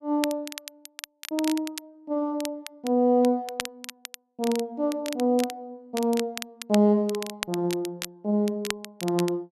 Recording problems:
crackling; vinyl, SNR 11 dB

